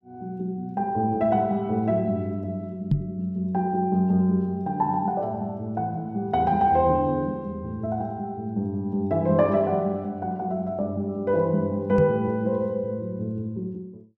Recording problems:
microphone bump; at 3 s and at 12 s; peak +7 dB vs average level

